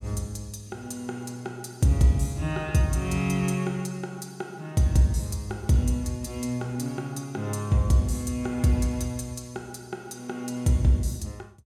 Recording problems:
none

